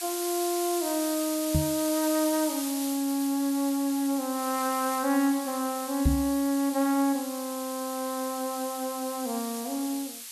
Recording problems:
hiss; slope +5 dB per octave, SNR 7 dB
microphone thump; at 1.5 s and at 6 s; peak +7 dB vs average level

